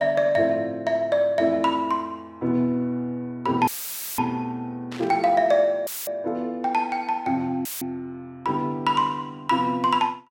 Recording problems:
audio cutting out; at 3.5 s for 0.5 s, at 6 s and at 7.5 s; filled with static
burst of static; at 5 s; peak -11 dB vs average level

